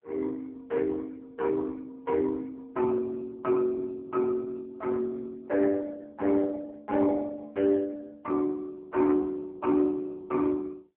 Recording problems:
phone line; 240 Hz to 2.5 kHz, AMR-NB

